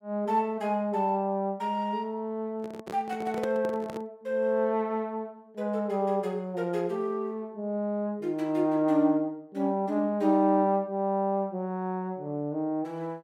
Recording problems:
microphone handling noise; from 2.5 to 4 s; peak -4 dB vs average level

